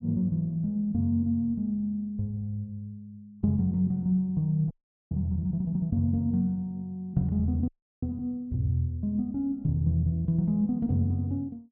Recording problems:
audio freezing; at 4.5 s and at 7.5 s

